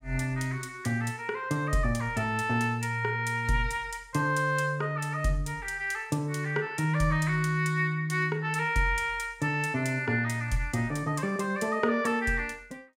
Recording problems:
none

